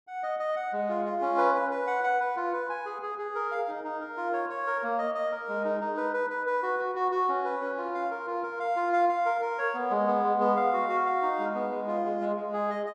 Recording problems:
none

